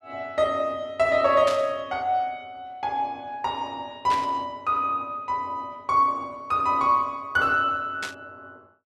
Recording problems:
static burst; at 1.5 s, at 4 s and at 8 s; peak -3 dB vs average level

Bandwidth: 12.5 kHz